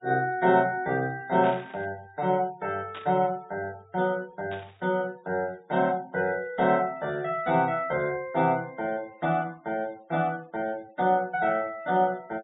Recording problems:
treble missing; nothing above 4 kHz
denoising artefacts; signal-to-artefact ratio 26 dB
burst of static; at 1.5 s, at 3 s and at 4.5 s; peak -9 dB vs average level

